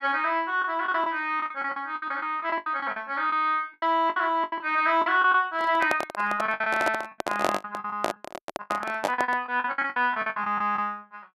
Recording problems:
lost packets; 16% of the sound replaced, filled with the last packet
handling noise; from 5.5 to 9.5 s; peak +4 dB vs average level

